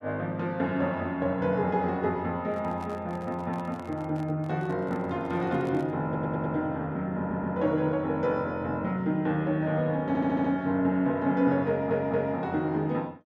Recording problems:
microphone handling noise; from 2.5 to 6 s; peak -11 dB vs average level
stutter; 4 times, first at 6 s

